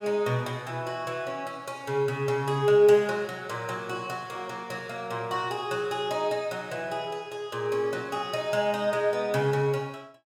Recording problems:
none

